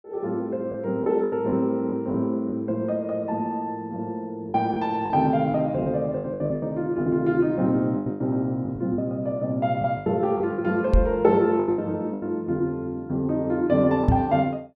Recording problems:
packet loss; 9% of the sound replaced, filled with the last packet
knock on the microphone; at 11 s and at 14 s; peak +7 dB vs average level

